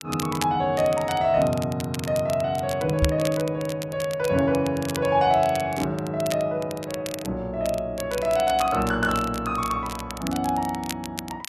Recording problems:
crackling; vinyl, SNR 13 dB
microphone thump; at 3 s; peak +5 dB vs average level

